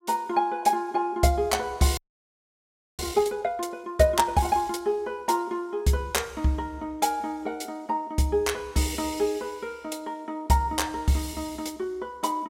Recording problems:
audio freezing; at 2 s for 1 s

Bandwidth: 16 kHz